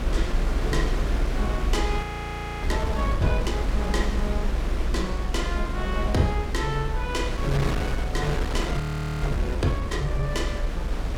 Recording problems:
rumble; below 56 Hz, strongest tone 32 Hz, SNR 1 dB
wind noise; below 880 Hz, SNR 2 dB
frozen audio; at 2 s for 0.5 s and at 9 s

